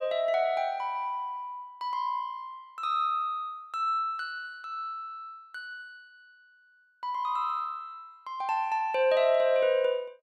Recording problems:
none

